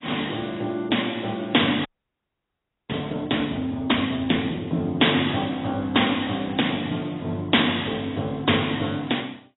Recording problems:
lossy compression; AAC, log-spectral distance 5 dB, nothing above 3.8 kHz
frozen audio; at 2 s for 1 s

